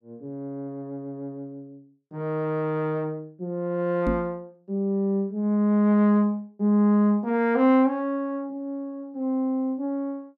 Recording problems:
microphone thump; at 4 s; peak +1 dB vs average level

